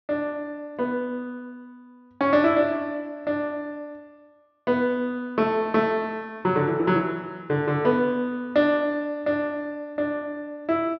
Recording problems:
treble cut off; nothing above 6.1 kHz

